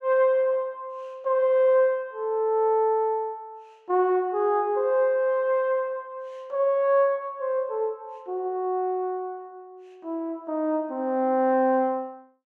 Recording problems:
none

